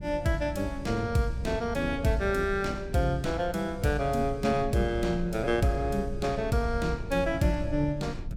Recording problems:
low-frequency rumble; below 110 Hz, SNR 11 dB

